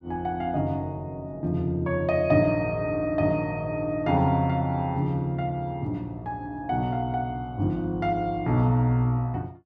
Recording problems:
none

